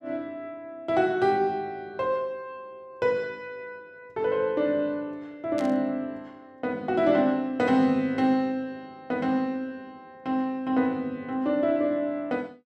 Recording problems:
burst of static; at 5.5 s; peak -10 dB vs average level

